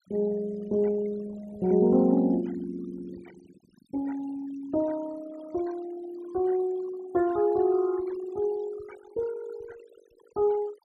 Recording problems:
denoising artefacts; signal-to-artefact ratio 21 dB

